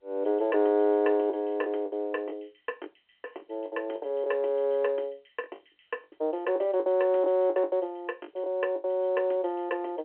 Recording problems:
phone line; 260 Hz to 3.2 kHz, G.711
lost packets; 9% of the sound replaced, filled with the last packet

